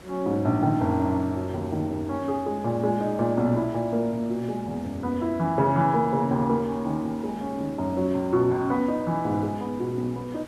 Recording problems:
hiss; slope -5 dB per octave, SNR 22 dB

